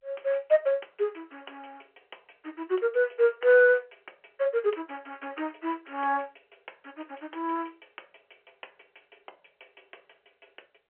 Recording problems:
telephone audio; 340 Hz to 3.2 kHz, G.711

